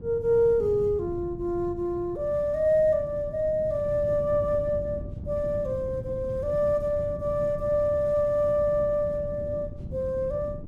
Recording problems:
wind noise; below 180 Hz, SNR 12 dB

